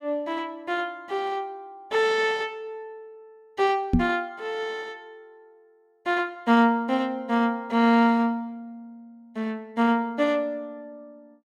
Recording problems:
microphone bump; at 4 s; peak +7 dB vs average level

